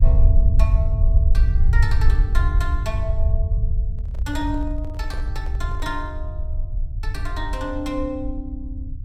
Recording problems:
low-frequency rumble; below 74 Hz, SNR -8 dB
handling noise; from 4 to 6 s; peak -6 dB vs average level

